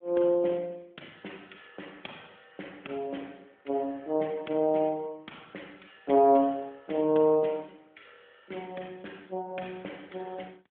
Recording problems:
telephone audio; 220 Hz to 3.5 kHz, AMR-NB

